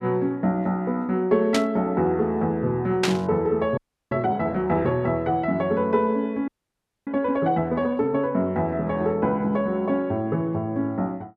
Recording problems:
burst of static; at 1.5 s and at 3 s; peak +4 dB vs average level
frozen audio; at 4 s and at 6.5 s for 0.5 s

